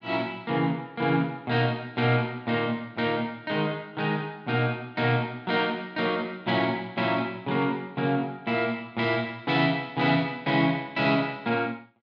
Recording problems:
none

